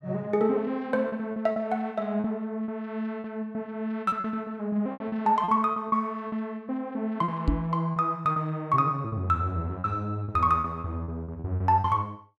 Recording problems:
packet loss; 9% of the sound replaced, filled with repeated pitch periods
microphone bump; at 7.5 s; peak +6 dB vs average level

